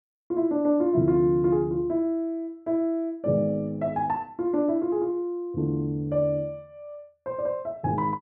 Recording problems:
none

